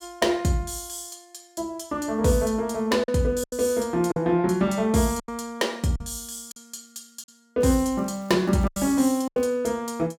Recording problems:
packet loss; 6% of the sound replaced, filled with silence
crackle; from 7.5 to 9.5 s; loose cable, SNR 29 dB

